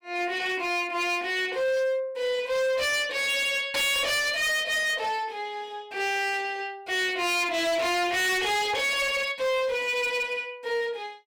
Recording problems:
distorted audio; hard clipping, uneven, signal-to-distortion ratio 7 dB

